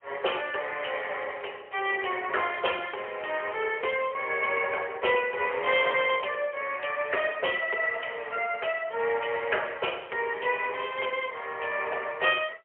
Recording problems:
phone line; 370 Hz to 3.2 kHz, AMR-NB, then MP3

